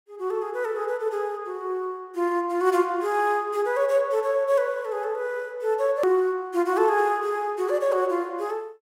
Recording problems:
click at an edit; at 6 s

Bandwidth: 16 kHz